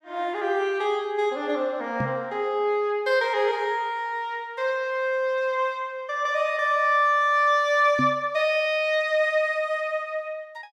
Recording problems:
microphone bump; at 2 s and at 8 s; peak 0 dB vs average level

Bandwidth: 14.5 kHz